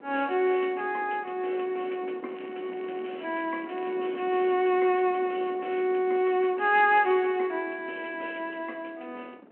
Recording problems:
phone line; 220 Hz to 3.2 kHz, G.726
wind noise; below 580 Hz, SNR 20 dB
crackle; from 2.5 to 4 s; loose cable, SNR 27 dB

